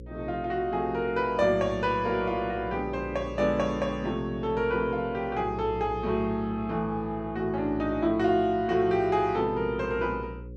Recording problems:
hum; 60 Hz, harmonics up to 540 Hz, SNR 15 dB

